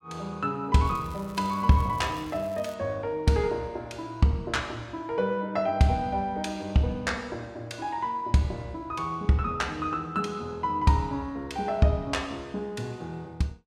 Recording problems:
crackle; from 1 to 2.5 s; loose cable, SNR 24 dB

